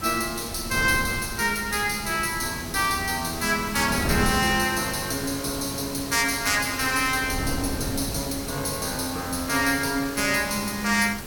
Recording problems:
hiss; slope -2 dB per octave, SNR 13 dB
wind on the microphone; below 370 Hz, SNR 11 dB

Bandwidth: 17 kHz